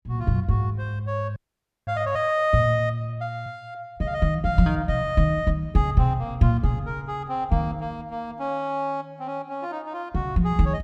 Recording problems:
audio freezing; at 1.5 s for 0.5 s

